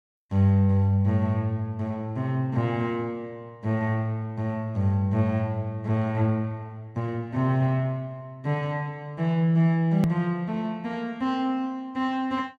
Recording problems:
edit click; at 10 s

